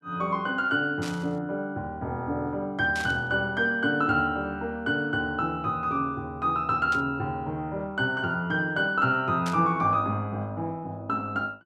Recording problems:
static burst; 4 times, first at 1 s; peak -6 dB vs average level

